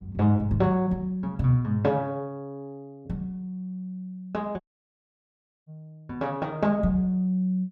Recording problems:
audio cutting out; at 4.5 s for 1 s

